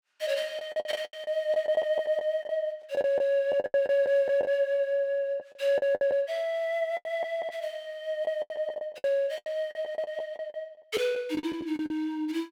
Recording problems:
packet loss; 14% of the sound replaced, filled with the last packet

